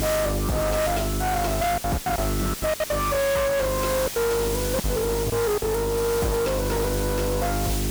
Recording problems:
distorted audio; hard clipping, signal-to-distortion ratio 7 dB
electrical hum; 50 Hz, harmonics up to 700 Hz, SNR 4 dB
background hiss; slope 0 dB per octave, SNR 7 dB
lost packets; 7% of the sound replaced, filled with silence

